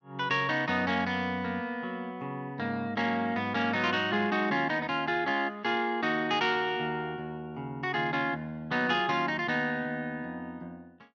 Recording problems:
none

